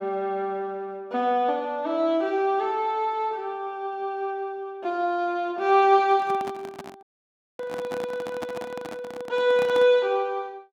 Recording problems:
handling noise; from 6 to 10 s; peak -6 dB vs average level
dropout; at 7 s for 0.5 s

